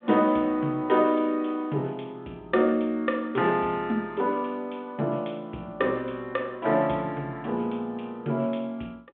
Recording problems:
phone line; 190 Hz to 3.5 kHz, G.726

